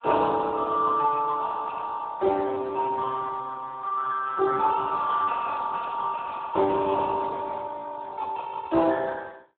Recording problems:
phone line; 300 Hz to 2.7 kHz, Speex

